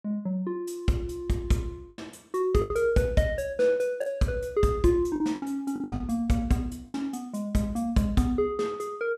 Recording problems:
packet loss; 6% of the sound replaced, filled with the last packet

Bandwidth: 15 kHz